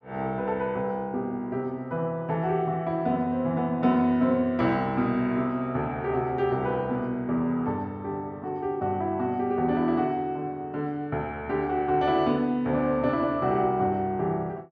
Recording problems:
none

